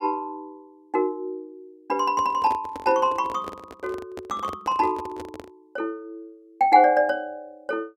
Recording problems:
microphone handling noise; from 2 to 5.5 s; peak -7 dB vs average level

